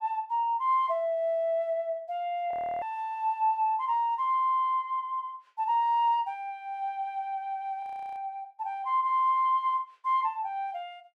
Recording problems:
audio freezing; at 2.5 s and at 8 s

